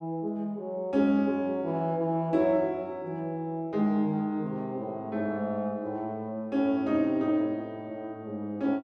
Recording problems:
none

